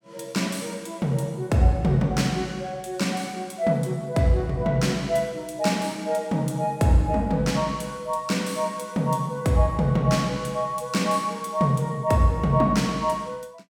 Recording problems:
none

